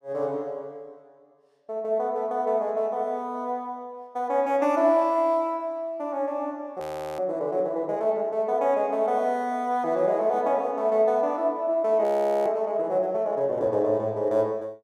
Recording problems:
audio freezing; at 7 s and at 12 s

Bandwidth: 14 kHz